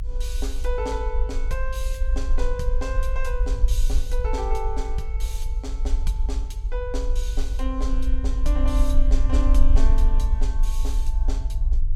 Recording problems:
low-frequency rumble; below 50 Hz, strongest tone 22 Hz, SNR -7 dB

